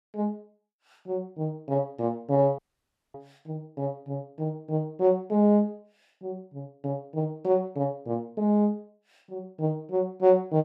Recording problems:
audio cutting out; at 2.5 s for 0.5 s

